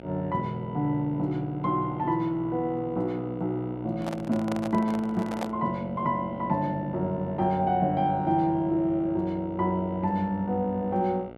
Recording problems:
electrical hum; 60 Hz, harmonics up to 2.2 kHz, SNR 17 dB
microphone handling noise; from 4 to 5.5 s; peak 0 dB vs average level

